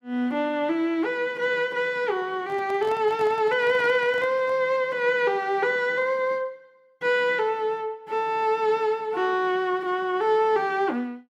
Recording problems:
handling noise; from 2.5 to 4.5 s; peak -12 dB vs average level

